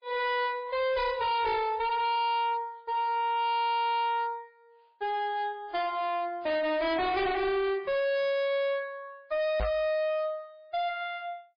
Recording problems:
lossy codec; MP3, log-spectral distance 2 dB, nothing above 5 kHz
distorted audio; hard clipping, signal-to-distortion ratio 7 dB
knock on the microphone; at 9.5 s; peak +3 dB vs average level

